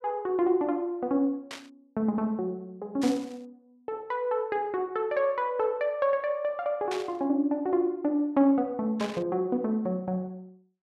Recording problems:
static burst; 4 times, first at 1.5 s; peak -5 dB vs average level

